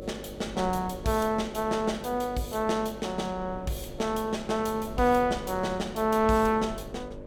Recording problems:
hum; 50 Hz, harmonics up to 600 Hz, SNR 15 dB
wind noise; below 290 Hz, SNR 18 dB

